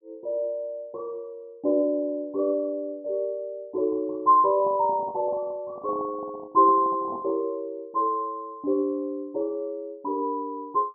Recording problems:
handling noise; from 4.5 to 7.5 s; peak -9 dB vs average level

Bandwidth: 1 kHz